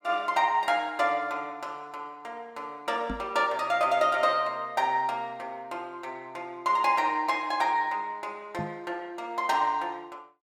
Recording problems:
microphone bump; at 3 s and at 8.5 s; peak -3 dB vs average level

